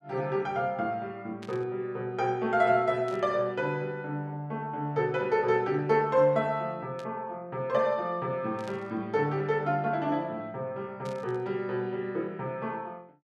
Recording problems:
static burst; 5 times, first at 1.5 s; peak -13 dB vs average level

